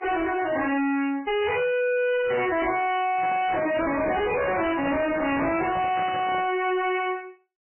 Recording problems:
lossy codec; MP3, log-spectral distance 6 dB, nothing above 2.6 kHz
distortion; hard clipping, signal-to-distortion ratio 5 dB
handling noise; from 3 to 6.5 s; peak 0 dB vs average level

